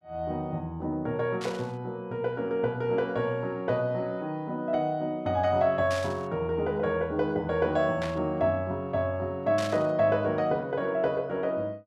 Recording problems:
burst of static; 4 times, first at 1.5 s; peak -5 dB vs average level

